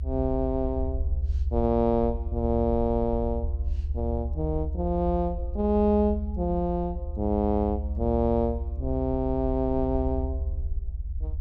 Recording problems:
rumble; below 72 Hz, SNR 5 dB

